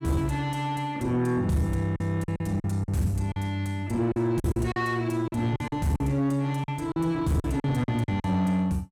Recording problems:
distortion; soft clipping, signal-to-distortion ratio 10 dB
packet loss; 10% of the sound replaced, filled with silence

